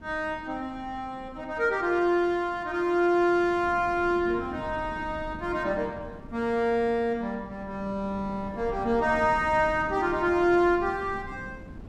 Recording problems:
wind noise; below 280 Hz, SNR 17 dB

